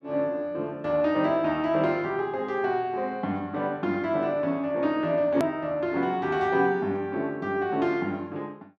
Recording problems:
click at an edit; at 5.5 s

